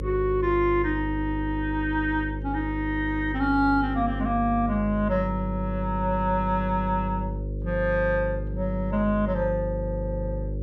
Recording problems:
hum; 50 Hz, harmonics up to 550 Hz, SNR 6 dB

